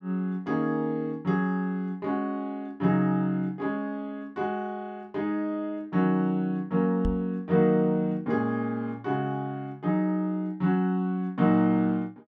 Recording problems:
microphone bump; at 7 s; peak 0 dB vs average level

